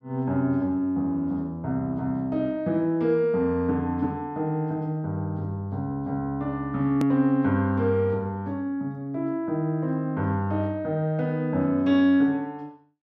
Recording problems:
click at an edit; at 7 s

